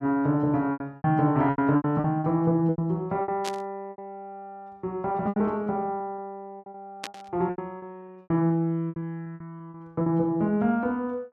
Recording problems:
packet loss; 14% of the sound replaced, filled with repeated pitch periods
burst of static; at 3.5 s and at 7 s; peak -3 dB vs average level

